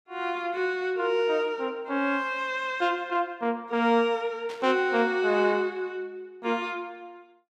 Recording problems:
burst of static; at 4.5 s; peak -12 dB vs average level

